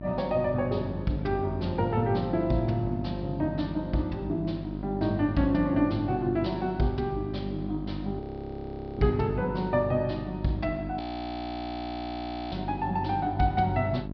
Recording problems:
low-pass filter; nothing above 5.5 kHz
electrical hum; 50 Hz, harmonics up to 750 Hz, SNR 8 dB
audio freezing; at 8 s for 1 s and at 11 s for 1.5 s

